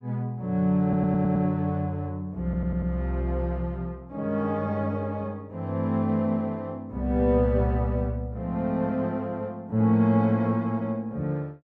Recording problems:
stutter; at 1 s and at 2.5 s

